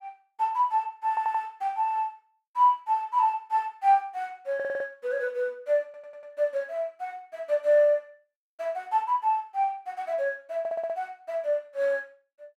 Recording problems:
stutter; 4 times, first at 1 s

